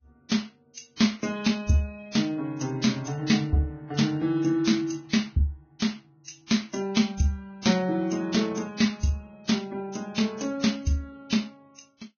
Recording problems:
lossy compression; Vorbis, log-spectral distance 4 dB, nothing above 6.5 kHz

